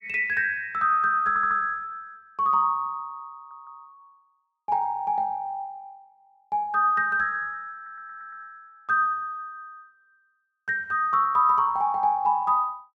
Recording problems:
audio stuttering; at 1.5 s, at 3.5 s and at 8 s

